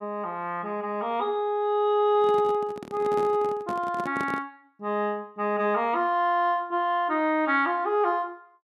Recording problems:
handling noise; from 2 to 4.5 s; peak -5 dB vs average level

